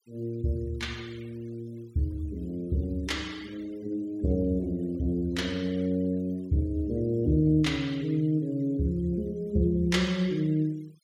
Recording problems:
noise reduction artefacts; signal-to-artefact ratio 27 dB

